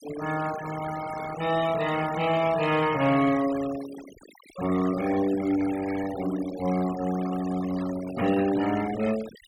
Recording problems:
denoising artefacts; signal-to-artefact ratio 13 dB

